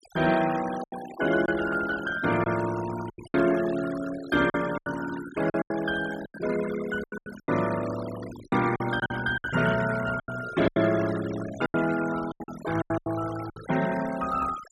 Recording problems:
noise reduction artefacts; signal-to-artefact ratio 13 dB
packet loss; 11% of the sound replaced, filled with silence

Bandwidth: 13 kHz